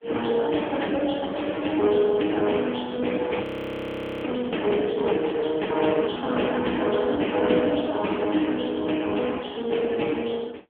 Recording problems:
telephone audio; 220 Hz to 3.4 kHz, AMR-NB
audio freezing; at 3.5 s for 1 s

